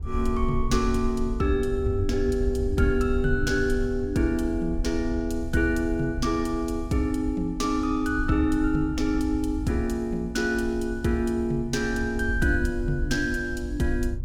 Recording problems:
wind noise; below 72 Hz, SNR 8 dB

